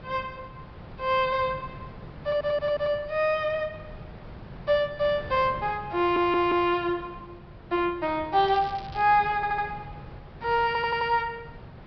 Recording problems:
treble cut off; nothing above 5.5 kHz
wind on the microphone; below 510 Hz, SNR 18 dB
audio stuttering; 4 times, first at 2 s
crackling; at 8.5 s; loose cable, SNR 22 dB

